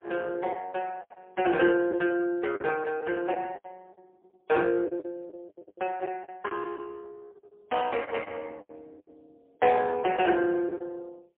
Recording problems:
telephone audio; 260 Hz to 2.5 kHz, AMR-NB, then MP3
packet loss; 10% of the sound replaced, filled with the last packet

